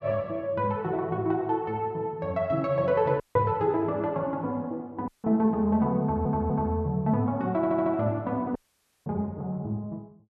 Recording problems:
audio cutting out; at 3 s, at 5 s and at 8.5 s for 0.5 s
stutter; at 6 s and at 7.5 s

